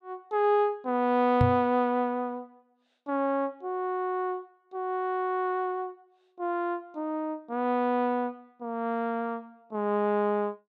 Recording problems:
microphone thump; at 1.5 s; peak +7 dB vs average level

